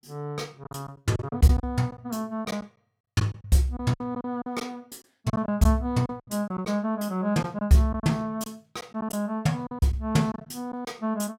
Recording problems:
lost packets; 10% of the sound replaced, filled with silence

